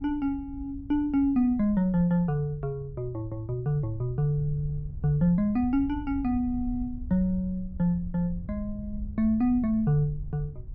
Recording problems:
wind noise; below 80 Hz, SNR 14 dB

